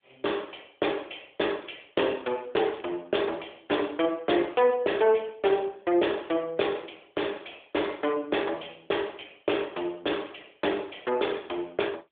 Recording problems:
phone line; 260 Hz to 3.5 kHz, AMR-NB
crackle; at 2.5 s; loose cable, SNR 23 dB

